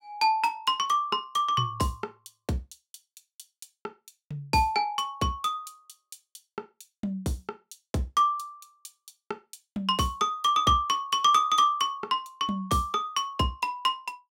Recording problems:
none

